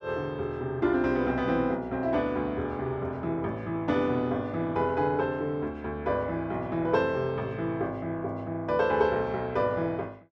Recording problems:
none

